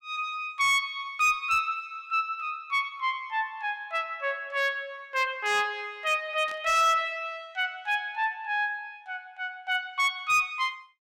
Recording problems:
distortion; hard clipping, uneven, signal-to-distortion ratio 12 dB
static burst; at 6.5 s; peak -14 dB vs average level

